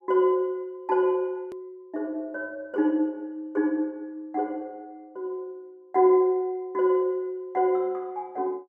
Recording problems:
hard cut with a click; at 1.5 s

